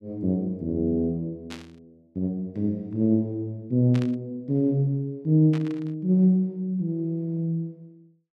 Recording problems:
burst of static; at 1.5 s, at 4 s and at 5.5 s; peak -10 dB vs average level

